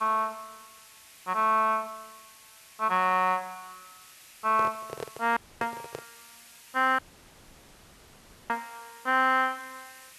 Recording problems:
background hiss; slope +2 dB per octave, SNR 23 dB
microphone handling noise; from 4.5 to 6 s; peak -5 dB vs average level
audio cutting out; at 5.5 s and at 7 s for 1.5 s

